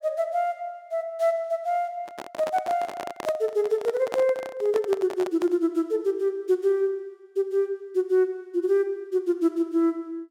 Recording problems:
microphone handling noise; from 2 to 5.5 s; peak -1 dB vs average level

